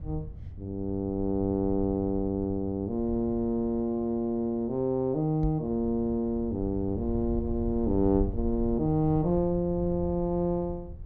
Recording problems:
rumble; below 94 Hz, SNR 11 dB
microphone bump; at 5.5 s; peak -1 dB vs average level

